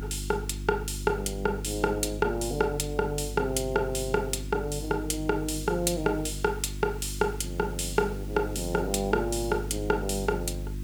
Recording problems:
hum; 50 Hz, harmonics up to 350 Hz, SNR 8 dB
background hiss; slope 0 dB per octave, SNR 23 dB

